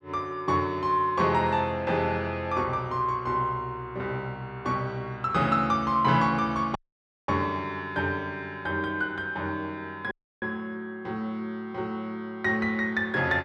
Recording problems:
dropout; at 7 s for 0.5 s and at 10 s

